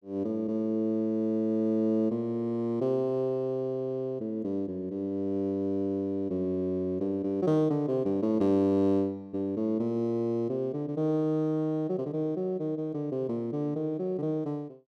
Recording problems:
none

